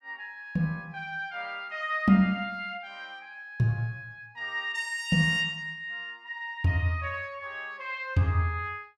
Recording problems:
none

